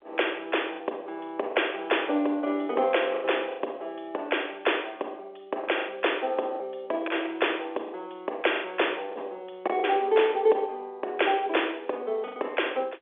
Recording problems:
telephone audio; 340 Hz to 3.5 kHz, G.711
lost packets; 6% of the sound replaced, filled with the last packet

